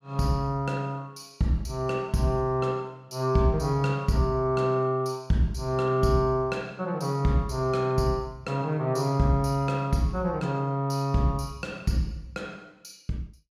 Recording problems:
none

